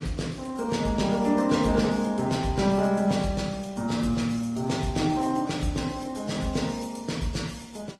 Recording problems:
lossy compression; AAC, then Opus, log-spectral distance 4 dB, nothing above 15.5 kHz

